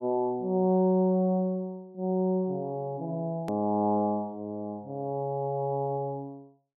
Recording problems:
edit click; at 3.5 s

